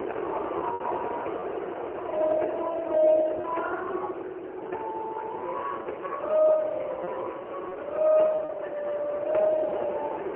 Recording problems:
phone line; 300 Hz to 3.6 kHz, AMR-NB, then MP3
background hiss; SNR 28 dB
wind on the microphone; below 690 Hz, SNR 8 dB
packet loss; 3% of the sound replaced, filled with repeated pitch periods

